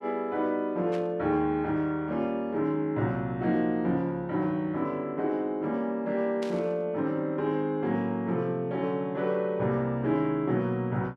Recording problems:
static burst; at 1 s and at 6.5 s; peak -9 dB vs average level

